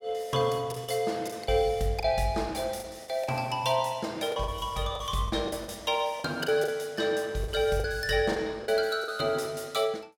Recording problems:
packet loss; 9% of the sound replaced, filled with the last packet

